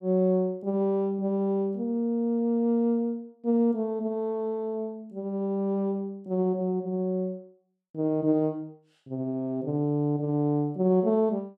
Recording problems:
none

